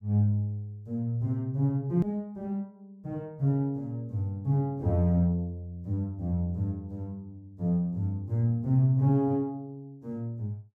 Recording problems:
hard cut with a click; at 2 s

